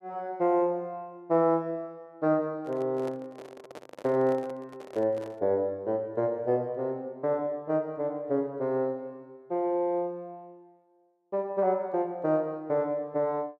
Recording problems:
microphone handling noise; from 2.5 to 5.5 s; peak -8 dB vs average level

